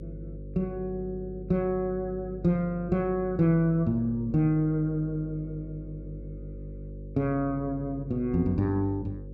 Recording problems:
hum; 50 Hz, harmonics up to 550 Hz, SNR 13 dB

